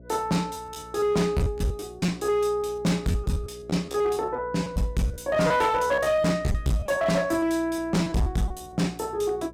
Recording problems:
distortion; hard clipping, signal-to-distortion ratio 11 dB
electrical hum; 60 Hz, harmonics up to 660 Hz, SNR 22 dB
lost packets; 12% of the sound replaced, filled with repeated pitch periods

